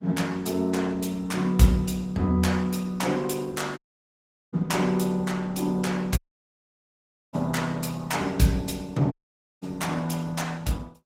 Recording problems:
lossy codec; Opus, log-spectral distance 4 dB, nothing above 16 kHz
dropout; at 4 s for 0.5 s, at 6 s for 1 s and at 9 s

